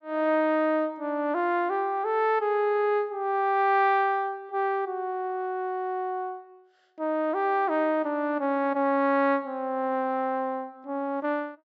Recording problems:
treble cut off; nothing above 8 kHz

